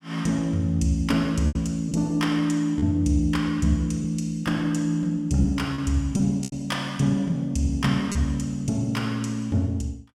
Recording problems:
lost packets; 3% of the sound replaced, filled with repeated pitch periods

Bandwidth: 16.5 kHz